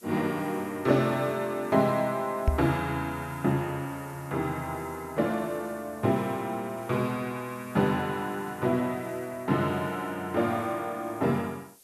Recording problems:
hiss; SNR 23 dB
microphone thump; at 2.5 s; peak +8 dB vs average level

